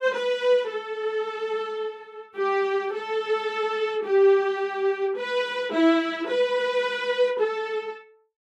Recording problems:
none

